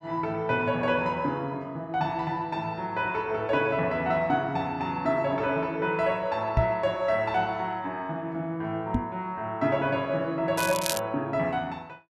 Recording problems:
knock on the microphone; at 6.5 s and at 9 s; peak +6 dB vs average level
crackling; at 11 s; loose cable, SNR 4 dB

